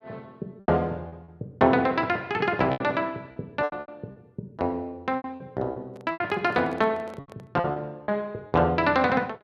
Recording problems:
packet loss; 11% of the sound replaced, filled with repeated pitch periods
microphone handling noise; from 6 to 7.5 s; peak -12 dB vs average level

